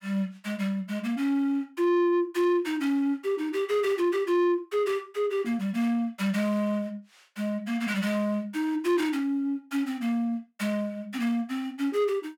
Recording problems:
distortion; soft clipping, signal-to-distortion ratio 11 dB

